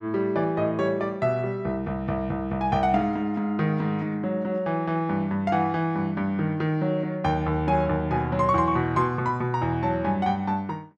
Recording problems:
none

